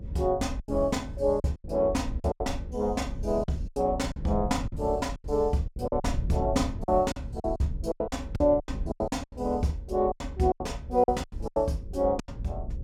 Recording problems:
hum; 50 Hz, harmonics up to 550 Hz, SNR 26 dB
rumble; below 98 Hz, SNR 9 dB
lost packets; 14% of the sound replaced, filled with silence

